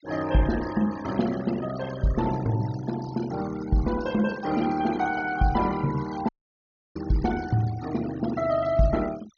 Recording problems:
treble cut off; nothing above 6.7 kHz
denoising artefacts; signal-to-artefact ratio 15 dB
audio cutting out; at 6.5 s for 0.5 s

